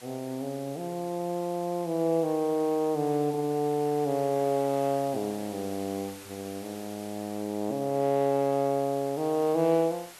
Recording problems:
hiss; slope -1 dB per octave, SNR 18 dB

